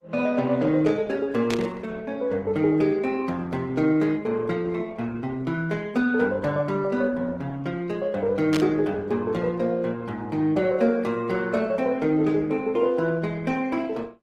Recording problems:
codec artefacts; Opus, then Opus, log-spectral distance 3 dB
burst of static; at 1.5 s and at 8.5 s; peak -3 dB vs average level

